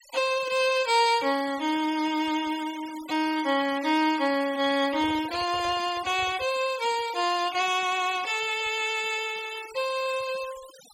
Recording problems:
denoising artefacts; signal-to-artefact ratio 16 dB
handling noise; from 5 to 6.5 s; peak -12 dB vs average level

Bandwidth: 16 kHz